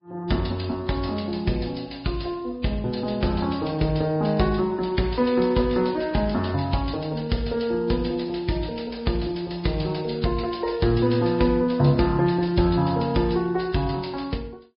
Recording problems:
low-pass filter; nothing above 5.2 kHz
lossy codec; Vorbis, log-spectral distance 4 dB

